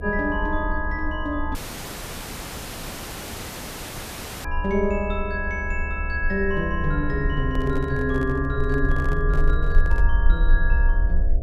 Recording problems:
hum; 60 Hz, harmonics up to 720 Hz, SNR 13 dB
low-frequency rumble; below 52 Hz, SNR 1 dB
audio cutting out; at 1.5 s for 3 s
microphone handling noise; from 7.5 to 10 s; peak -7 dB vs average level

